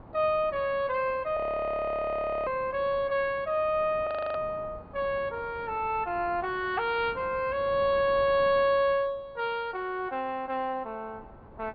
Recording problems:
treble missing; nothing above 4.8 kHz
wind noise; below 740 Hz, SNR 20 dB
frozen audio; at 1.5 s for 1 s and at 4 s

